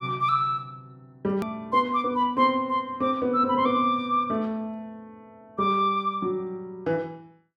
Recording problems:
hard cut with a click; at 1.5 s

